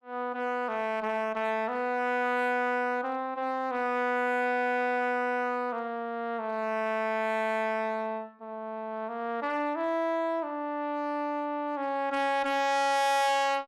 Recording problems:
distorted audio; hard clipping, uneven, signal-to-distortion ratio 11 dB

